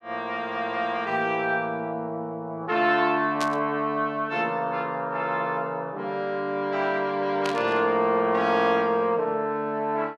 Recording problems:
burst of static; at 3.5 s and at 7.5 s; peak -2 dB vs average level

